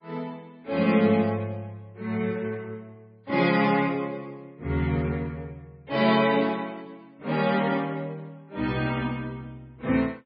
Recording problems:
lossy codec; MP3, log-spectral distance 2 dB, nothing above 4.9 kHz

